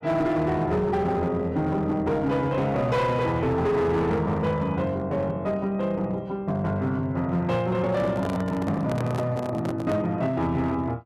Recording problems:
distortion; hard clipping, uneven, signal-to-distortion ratio 12 dB
microphone handling noise; from 8 to 10 s; peak -2 dB vs average level

